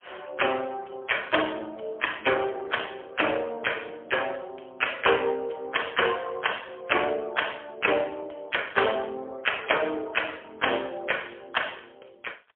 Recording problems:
phone line; 320 Hz to 3.3 kHz, AMR-NB, then MP3

